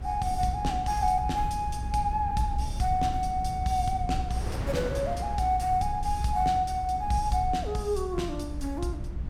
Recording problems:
low-frequency rumble; below 92 Hz, SNR 6 dB
wind noise; below 640 Hz, SNR 15 dB

